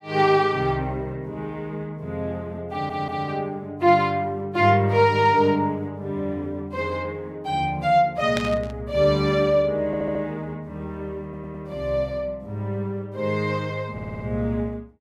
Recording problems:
stutter; 4 times, first at 2.5 s
static burst; at 8.5 s; peak -1 dB vs average level

